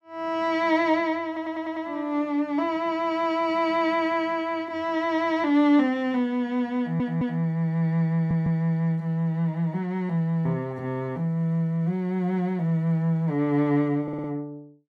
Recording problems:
audio stuttering; 4 times, first at 1.5 s

